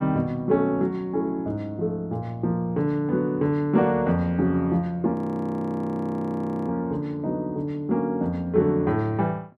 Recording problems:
audio freezing; at 5 s for 1.5 s

